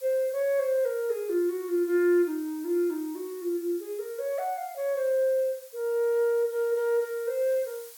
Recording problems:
hiss; SNR 20 dB

